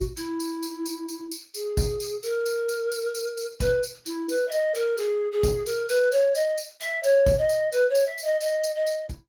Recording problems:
lossy compression; Opus, log-spectral distance 4 dB, nothing above 18 kHz

